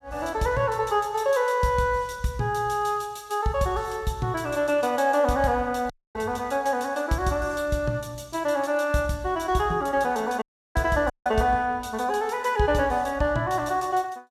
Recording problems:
dropout; at 6 s, at 10 s and at 11 s

